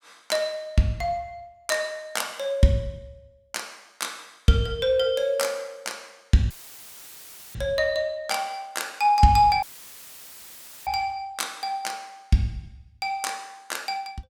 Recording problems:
dropout; at 6.5 s for 1 s and at 9.5 s for 1 s; filled with static

